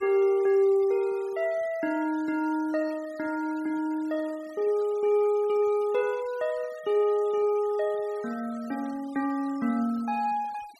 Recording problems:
denoising artefacts; signal-to-artefact ratio 24 dB

